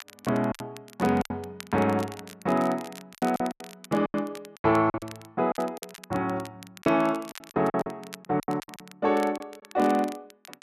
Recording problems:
crackle; vinyl, SNR 19 dB
packet loss; 12% of the sound replaced, filled with silence

